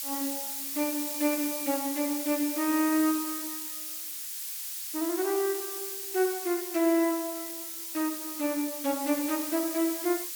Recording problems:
hiss; slope +7 dB per octave, SNR 4 dB

